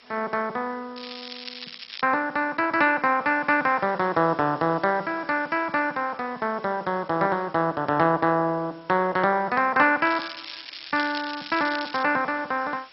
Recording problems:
lossy compression; MP2, log-spectral distance 12 dB, nothing above 5.5 kHz
background hiss; slope +1 dB per octave, SNR 27 dB
crackle; from 1 to 2 s and from 10 to 12 s; loose cable, SNR 13 dB

